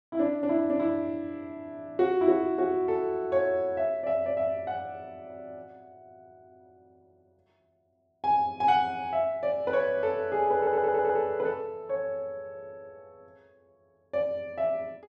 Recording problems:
stutter; at 11 s

